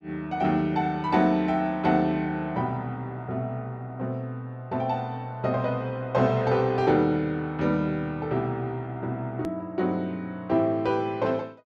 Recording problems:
edit click; at 9.5 s

